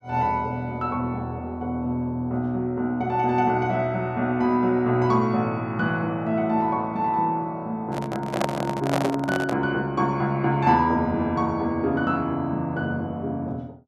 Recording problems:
handling noise; from 8 to 9.5 s; peak +3 dB vs average level

